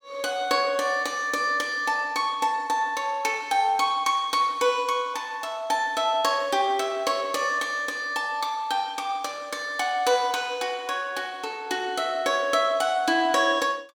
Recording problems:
none

